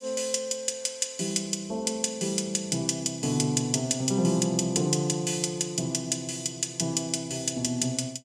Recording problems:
none

